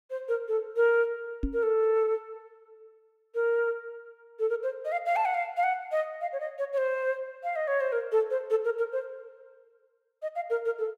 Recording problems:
microphone thump; at 1.5 s; peak +1 dB vs average level

